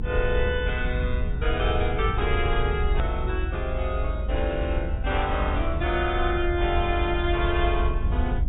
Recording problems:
treble cut off; nothing above 4 kHz
low-frequency rumble; below 72 Hz, SNR 1 dB
click at an edit; at 3 s

